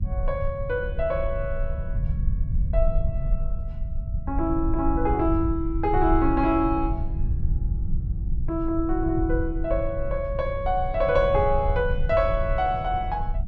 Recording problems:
low-frequency rumble; below 74 Hz, SNR 4 dB

